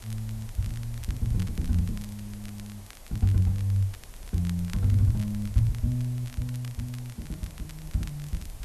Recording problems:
hiss; slope -3 dB per octave, SNR 21 dB
wind noise; below 64 Hz, SNR 18 dB
crackle; vinyl, SNR 21 dB

